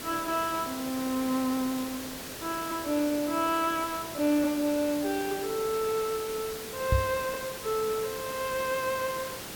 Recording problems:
background hiss; slope -3 dB per octave, SNR 8 dB
microphone thump; at 7 s; peak +7 dB vs average level

